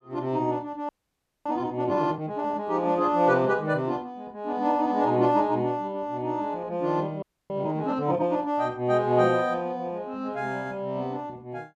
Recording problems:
frozen audio; at 1 s for 0.5 s and at 7 s

